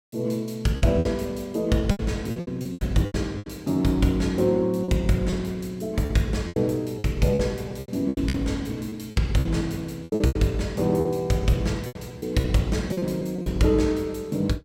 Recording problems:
lost packets; 12% of the sound replaced, filled with repeated pitch periods

